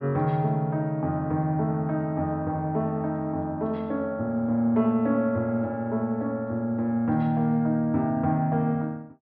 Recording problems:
low-pass filter; nothing above 5.5 kHz

